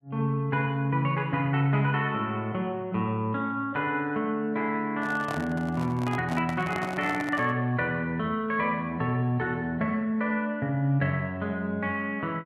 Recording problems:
microphone handling noise; from 5 to 7.5 s; peak -2 dB vs average level

